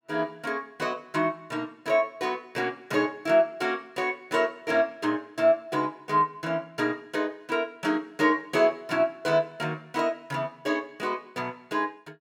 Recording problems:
none

